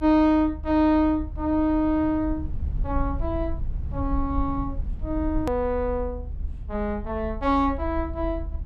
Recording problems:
low-frequency rumble; below 70 Hz, SNR 9 dB
edit click; at 5.5 s

